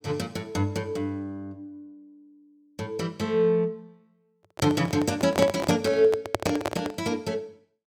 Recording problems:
microphone handling noise; from 4.5 to 7 s; peak +4 dB vs average level

